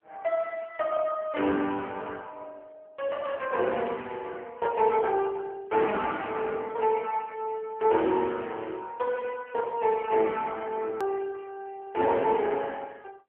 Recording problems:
telephone audio; 260 Hz to 3.3 kHz, AMR-NB
hard cut with a click; at 11 s

